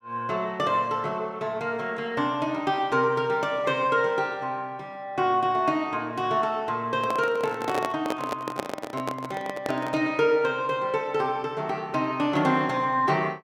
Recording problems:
handling noise; from 7 to 10 s; peak +1 dB vs average level

